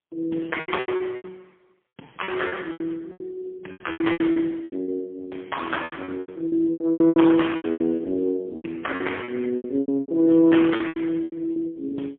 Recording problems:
phone line; 190 Hz to 3.4 kHz, AMR-NB, then MP3
lost packets; 20% of the sound replaced, filled with repeated pitch periods

